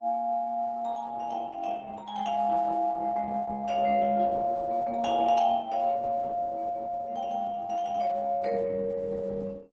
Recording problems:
lossy codec; Opus, log-spectral distance 3 dB

